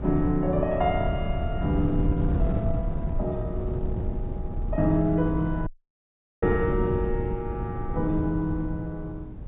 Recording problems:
treble cut off; nothing above 4 kHz
wind on the microphone; below 140 Hz, SNR 3 dB
dropout; at 5.5 s for 1 s

